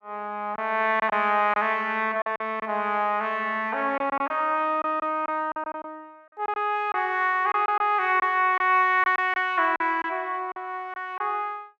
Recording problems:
packet loss; 7% of the sound replaced, filled with silence

